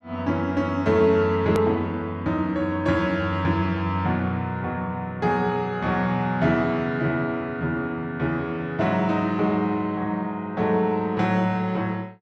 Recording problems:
click at an edit; at 1.5 s

